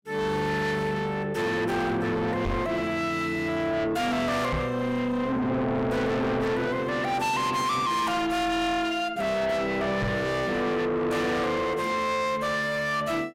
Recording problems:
distortion; soft clipping, signal-to-distortion ratio 7 dB
microphone thump; at 2.5 s, at 4.5 s and at 10 s; peak +1 dB vs average level

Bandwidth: 16 kHz